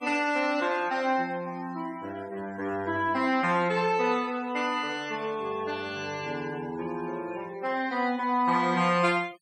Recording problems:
noise reduction artefacts; signal-to-artefact ratio 22 dB

